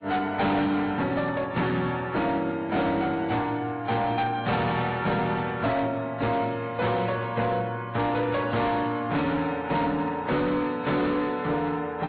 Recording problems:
treble cut off; nothing above 4.2 kHz
lossy compression; MP3, then AAC, log-spectral distance 2 dB
distorted audio; hard clipping, signal-to-distortion ratio 11 dB

